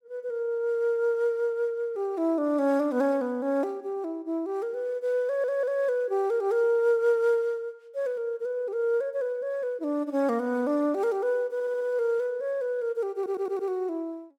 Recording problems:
stutter; at 5.5 s, at 12 s and at 13 s

